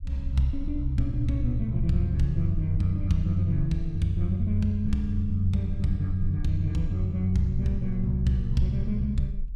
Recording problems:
rumble; below 40 Hz, strongest tone 18 Hz, SNR 11 dB

